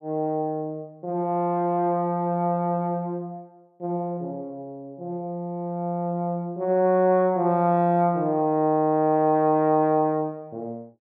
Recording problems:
none

